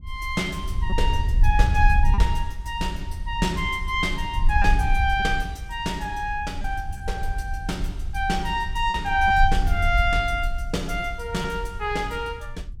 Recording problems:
wind on the microphone; below 66 Hz, SNR 2 dB
packet loss; 1.9% of the sound replaced, filled with repeated pitch periods

